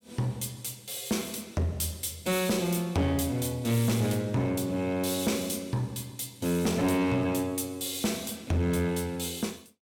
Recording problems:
distortion; soft clipping, signal-to-distortion ratio 12 dB

